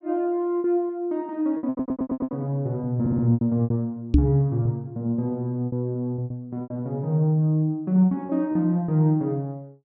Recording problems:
lost packets; 9% of the sound replaced, filled with repeated pitch periods
stutter; at 1.5 s and at 3 s
microphone thump; at 4 s; peak +10 dB vs average level

